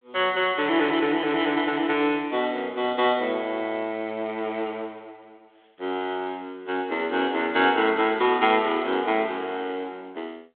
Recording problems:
phone line; 260 Hz to 3.6 kHz, G.726

